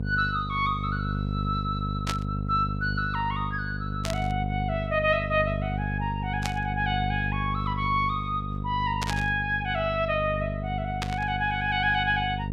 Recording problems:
hum; 50 Hz, harmonics up to 500 Hz, SNR 4 dB
burst of static; 5 times, first at 2 s; peak +2 dB vs average level

